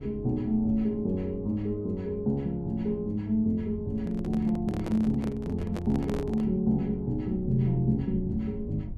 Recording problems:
rumble; below 110 Hz, SNR 15 dB
handling noise; from 4 to 6.5 s; peak -5 dB vs average level

